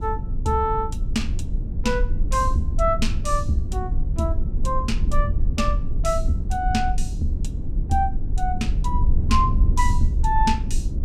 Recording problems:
low-frequency rumble; below 68 Hz, SNR 0 dB

